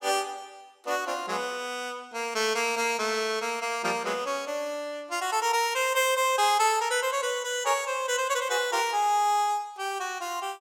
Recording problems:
none

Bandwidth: 17 kHz